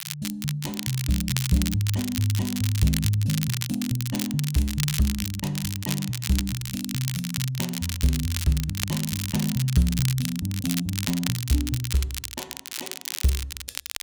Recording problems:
crackling; vinyl, SNR 5 dB

